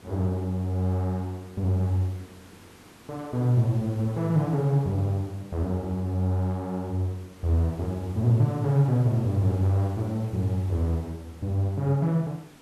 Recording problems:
hiss; slope -4 dB per octave, SNR 24 dB

